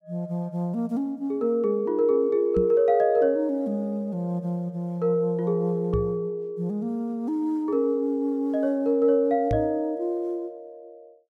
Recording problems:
knock on the microphone; at 2.5 s, at 6 s and at 9.5 s; peak 0 dB vs average level

